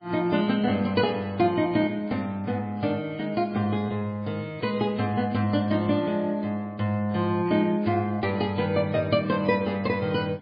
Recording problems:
lossy codec; MP3, log-spectral distance 2 dB, nothing above 4.2 kHz

